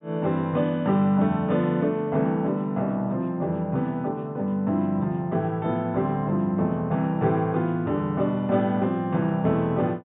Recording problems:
low-pass filter; nothing above 4 kHz

